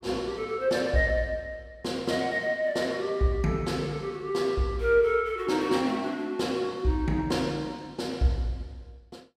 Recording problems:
none

